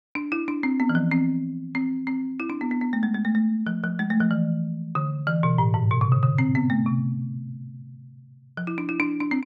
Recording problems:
none

